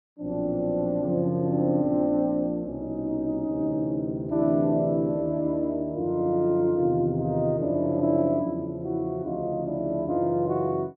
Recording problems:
none

